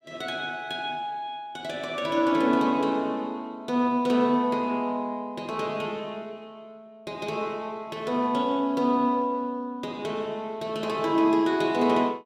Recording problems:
none

